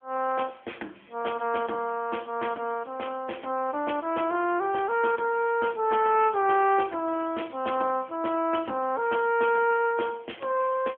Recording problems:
phone line; 260 Hz to 2.5 kHz, AMR-NB

